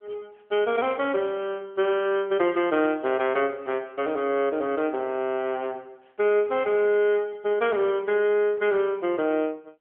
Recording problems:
phone line; 280 Hz to 3.3 kHz, AMR-NB

